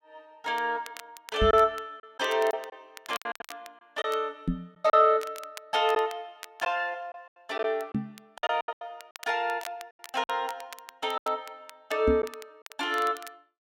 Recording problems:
crackling; vinyl, SNR 19 dB
packet loss; 8% of the sound replaced, filled with silence
microphone thump; 4 times, first at 1.5 s; peak +4 dB vs average level

